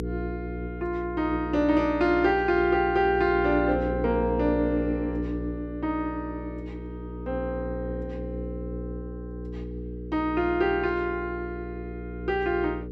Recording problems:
hum; 60 Hz, harmonics up to 480 Hz, SNR 8 dB

